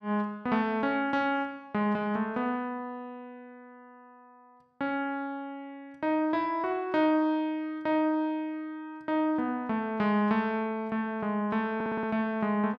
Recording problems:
stutter; at 12 s

